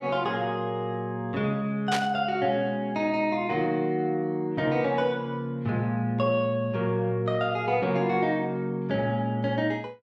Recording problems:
burst of static; at 2 s; peak +1 dB vs average level

